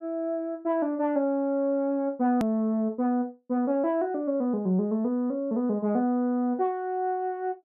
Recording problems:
edit click; at 2.5 s

